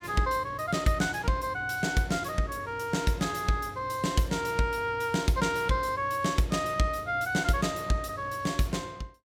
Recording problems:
none

